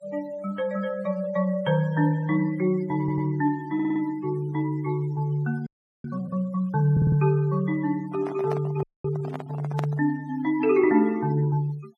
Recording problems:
denoising artefacts; signal-to-artefact ratio 24 dB
audio stuttering; at 3 s, at 3.5 s and at 7 s
audio freezing; at 5.5 s and at 9 s
microphone handling noise; from 8 to 10 s; peak -3 dB vs average level

